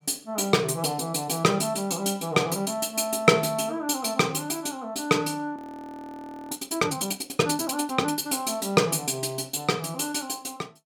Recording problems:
frozen audio; at 5.5 s for 1 s

